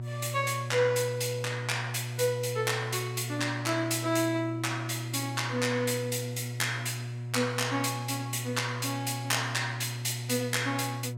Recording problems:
hum; 60 Hz, harmonics up to 720 Hz, SNR 7 dB

